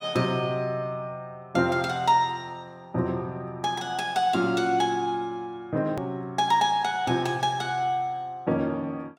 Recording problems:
edit click; at 6 s

